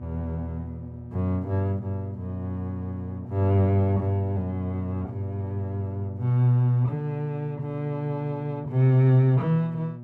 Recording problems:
hum; 60 Hz, harmonics up to 600 Hz, SNR 14 dB

